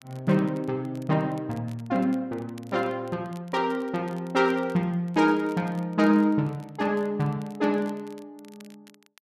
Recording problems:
crackle; vinyl, SNR 29 dB

